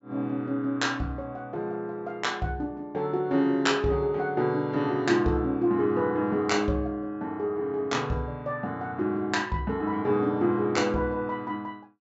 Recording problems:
treble missing; nothing above 8 kHz

